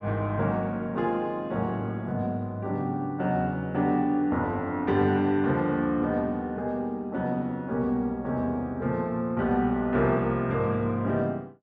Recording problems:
none

